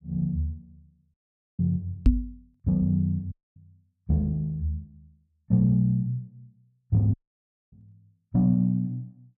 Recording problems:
audio cutting out; at 1 s, at 3.5 s and at 7 s for 0.5 s
knock on the microphone; at 2 s and at 7.5 s; peak +9 dB vs average level

